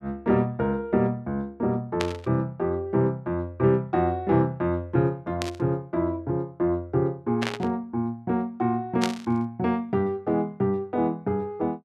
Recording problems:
static burst; 4 times, first at 2 s; peak +1 dB vs average level

